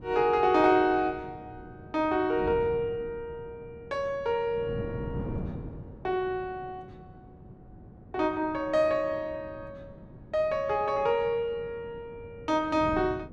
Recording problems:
wind on the microphone; below 280 Hz, SNR 15 dB

